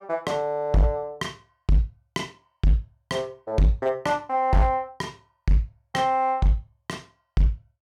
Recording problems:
distortion; hard clipping, signal-to-distortion ratio 11 dB

